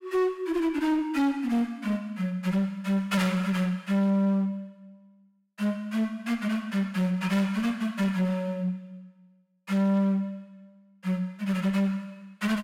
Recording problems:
distortion; hard clipping, uneven, signal-to-distortion ratio 10 dB

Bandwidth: 16 kHz